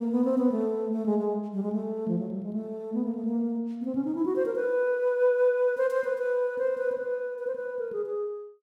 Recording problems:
none

